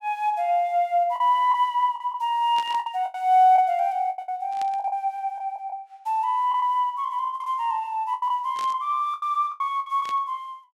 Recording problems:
lost packets; 10% of the sound replaced, filled with the last packet
burst of static; 4 times, first at 2.5 s; peak -10 dB vs average level

